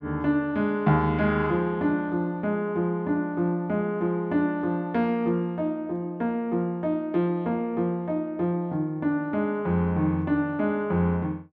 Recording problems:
none

